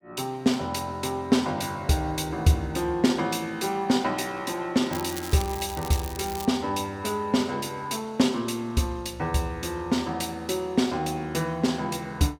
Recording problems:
crackling; from 5 to 6.5 s; loose cable, SNR 12 dB

